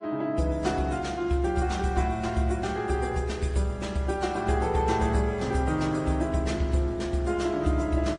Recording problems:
lossy compression; AAC, then MP3, log-spectral distance 3 dB, nothing above 9.2 kHz

